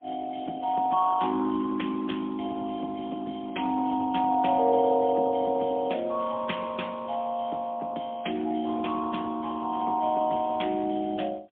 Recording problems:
phone line; 190 Hz to 3.5 kHz, AMR-NB, then MP3

